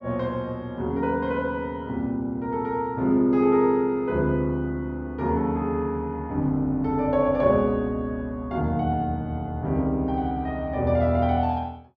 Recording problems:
none

